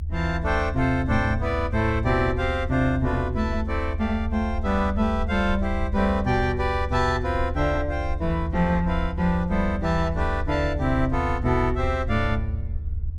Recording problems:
low-frequency rumble; below 80 Hz, SNR 5 dB

